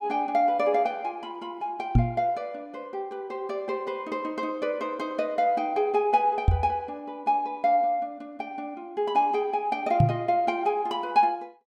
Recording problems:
microphone bump; at 2 s, at 6.5 s and at 10 s; peak +10 dB vs average level

